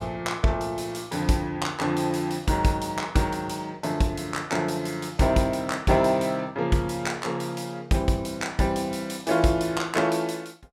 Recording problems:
none

